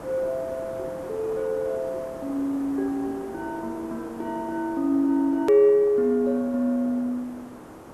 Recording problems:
background hiss; SNR 16 dB
click at an edit; at 5.5 s

